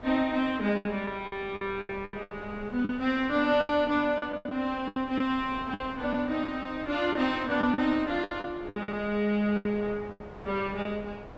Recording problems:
treble cut off; nothing above 7.9 kHz
wind noise; below 840 Hz, SNR 17 dB
lost packets; 13% of the sound replaced, filled with the last packet

